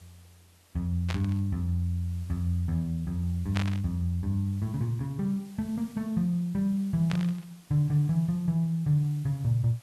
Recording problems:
background hiss; slope -2 dB per octave, SNR 27 dB
burst of static; at 1 s, at 3.5 s and at 7 s; peak -2 dB vs average level

